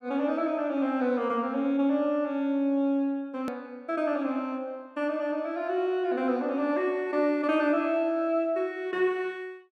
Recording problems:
click at an edit; at 3.5 s

